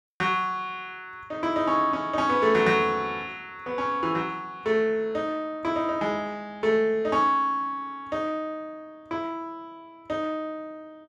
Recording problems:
none

